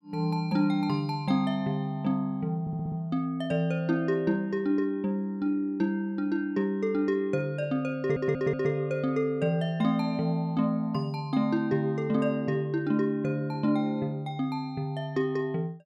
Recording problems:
audio stuttering; at 2.5 s and at 8 s

